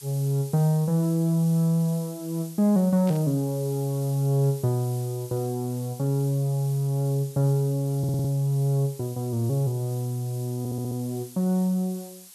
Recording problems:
background hiss; SNR 18 dB
burst of static; at 3 s; peak -14 dB vs average level
audio stuttering; at 8 s and at 11 s

